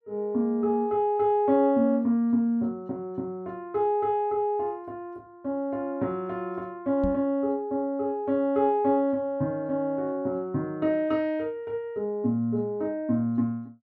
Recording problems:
microphone thump; at 7 s; peak -1 dB vs average level

